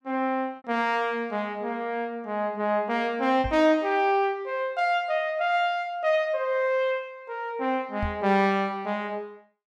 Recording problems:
lost packets; 1.3% of the sound replaced, filled with repeated pitch periods
knock on the microphone; at 3.5 s and at 8 s; peak -3 dB vs average level

